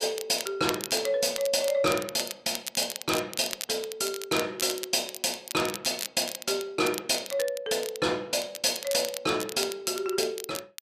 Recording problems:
crackling; vinyl, SNR 9 dB

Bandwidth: 14.5 kHz